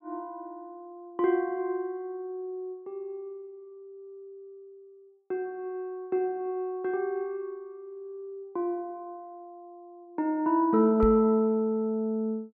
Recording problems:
microphone bump; at 11 s; peak +1 dB vs average level

